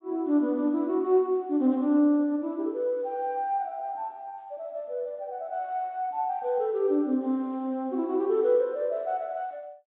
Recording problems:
low-pass filter; nothing above 3.8 kHz

